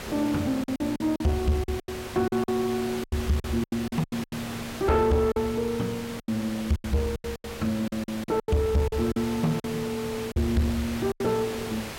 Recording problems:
distorted audio; soft clipping, signal-to-distortion ratio 10 dB
background hiss; slope -4 dB per octave, SNR 10 dB
packet loss; 13% of the sound replaced, filled with silence

